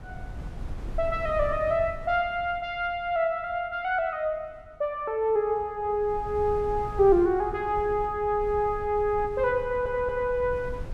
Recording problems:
wind on the microphone; below 100 Hz, SNR 14 dB
audio stuttering; at 9.5 s

